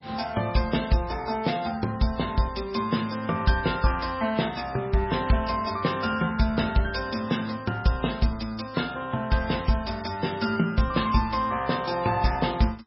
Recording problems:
lossy compression; MP3, log-spectral distance 4 dB, nothing above 5.3 kHz

